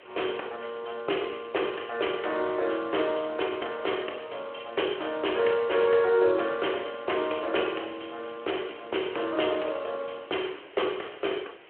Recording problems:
phone line; 300 Hz to 3.3 kHz, Speex
hiss; SNR 21 dB

